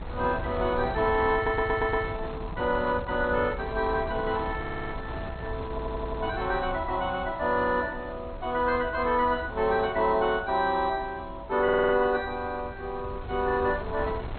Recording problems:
lossy compression; MP2, log-spectral distance 2 dB, nothing above 3.9 kHz
wind on the microphone; below 420 Hz, SNR 11 dB
audio stuttering; 4 times, first at 1.5 s

